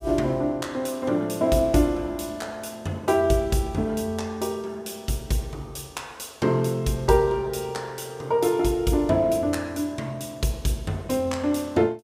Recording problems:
none

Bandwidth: 15.5 kHz